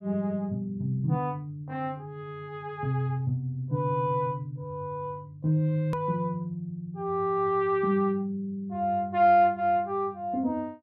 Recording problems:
click at an edit; at 6 s

